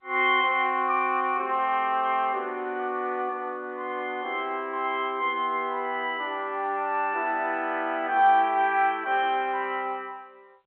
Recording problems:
telephone audio; 260 Hz to 3.3 kHz, G.711

